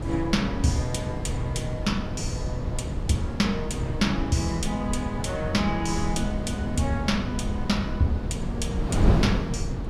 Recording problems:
wind noise; below 220 Hz, SNR 2 dB

